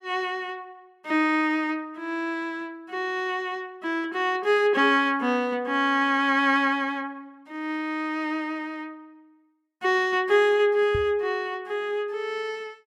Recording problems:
knock on the microphone; at 11 s; peak -3 dB vs average level

